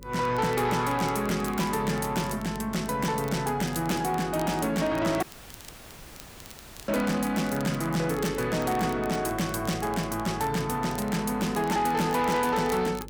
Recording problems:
distorted audio; soft clipping, signal-to-distortion ratio 11 dB
hum; 50 Hz, harmonics up to 550 Hz, SNR 17 dB
crackling; vinyl, SNR 21 dB
audio cutting out; at 5 s for 1.5 s

